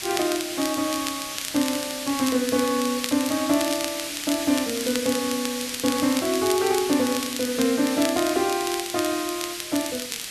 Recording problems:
hiss; SNR 6 dB
crackle; vinyl, SNR 9 dB

